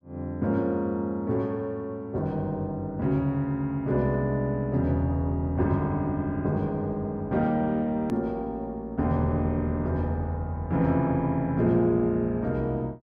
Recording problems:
click at an edit; at 8 s

